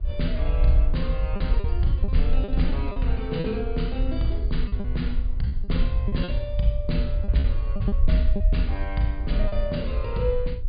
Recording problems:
treble missing; nothing above 4.9 kHz
low-frequency rumble; below 62 Hz, SNR -3 dB
wind noise; below 520 Hz, SNR 24 dB
lost packets; 7% of the sound replaced, filled with repeated pitch periods

